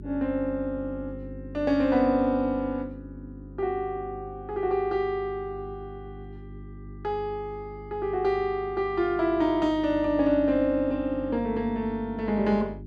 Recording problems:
mains hum; 50 Hz, harmonics up to 400 Hz, SNR 15 dB

